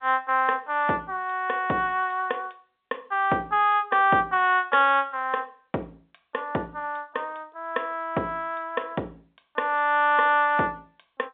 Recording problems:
telephone audio; 280 Hz to 3.8 kHz, G.711

